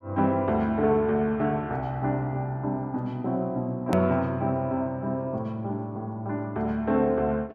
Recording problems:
hard cut with a click; at 4 s

